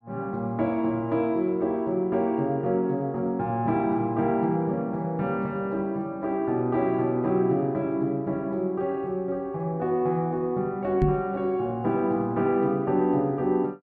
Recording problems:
microphone thump; at 11 s; peak +5 dB vs average level

